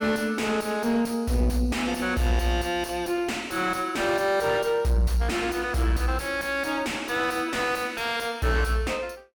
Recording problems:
distorted audio; soft clipping, signal-to-distortion ratio 6 dB

